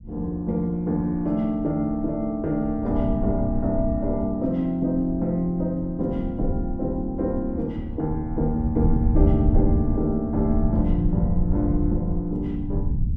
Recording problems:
rumble; below 110 Hz, SNR 3 dB

